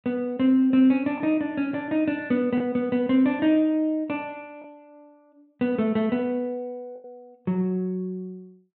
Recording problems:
treble cut off; nothing above 4 kHz
lost packets; 1.9% of the sound replaced, filled with the last packet

